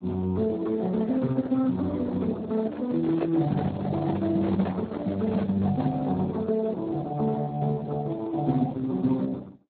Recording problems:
lossy compression; Opus, then Speex, log-spectral distance 3 dB
microphone handling noise; from 2.5 to 6 s; peak -3 dB vs average level

